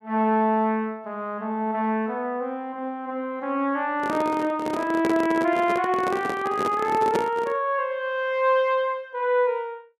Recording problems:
handling noise; from 4 to 7.5 s; peak +3 dB vs average level

